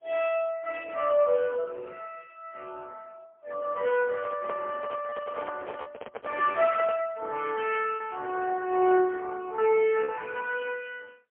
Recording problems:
phone line; 320 Hz to 3.3 kHz, AMR-NB, then MP3
packet loss; 1.9% of the sound replaced, filled with repeated pitch periods
handling noise; from 4 to 7 s; peak -4 dB vs average level

